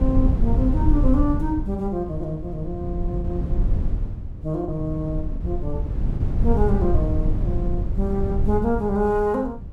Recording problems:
wind noise; below 90 Hz, SNR 0 dB
packet loss; 0.9% of the sound replaced, filled with the last packet

